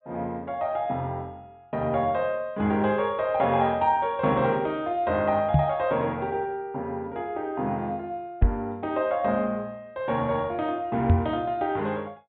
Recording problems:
low-pass filter; nothing above 4 kHz
microphone bump; at 5.5 s, at 8.5 s and at 11 s; peak +10 dB vs average level

